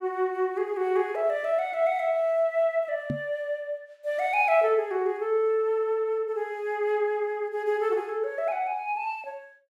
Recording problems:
microphone thump; at 3 s; peak 0 dB vs average level

